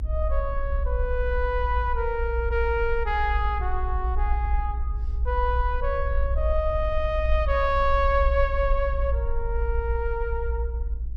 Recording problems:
rumble; below 60 Hz, SNR 1 dB

